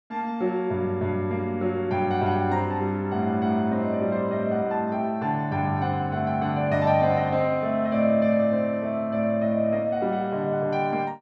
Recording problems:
none

